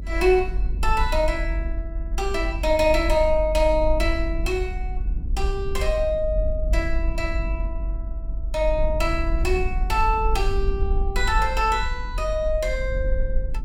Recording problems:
rumble; below 50 Hz, SNR 4 dB

